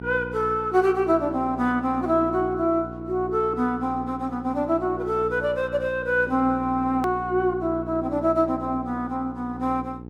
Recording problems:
hum; 60 Hz, harmonics up to 900 Hz, SNR 13 dB
click at an edit; at 7 s

